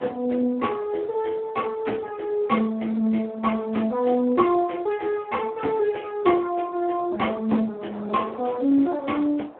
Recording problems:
telephone audio; 170 Hz to 2.8 kHz, Speex
wind noise; below 950 Hz, SNR 21 dB

